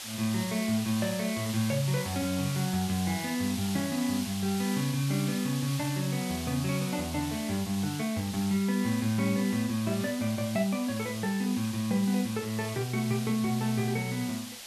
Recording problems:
hiss; slope +2 dB per octave, SNR 9 dB

